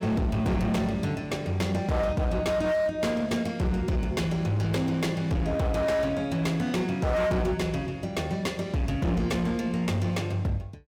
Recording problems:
distorted audio; hard clipping, signal-to-distortion ratio 7 dB

